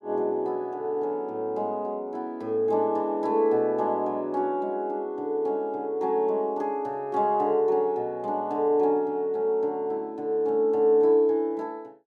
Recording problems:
none

